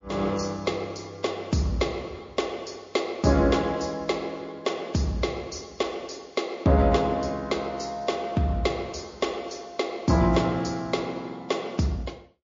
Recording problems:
lossy codec; MP3, log-spectral distance 4 dB, nothing above 6.7 kHz

